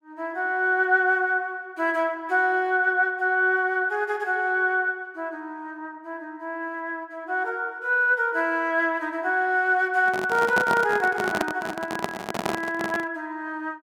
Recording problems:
microphone handling noise; from 10 to 13 s; peak +2 dB vs average level

